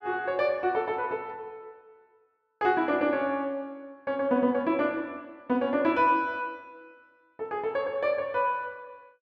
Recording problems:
none

